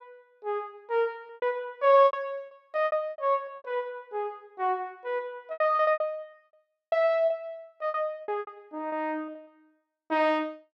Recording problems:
packet loss; 13% of the sound replaced, filled with repeated pitch periods

